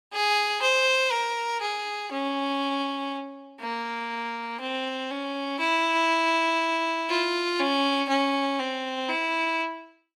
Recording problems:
none

